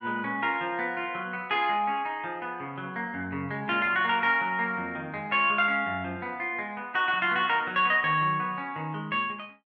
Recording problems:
none

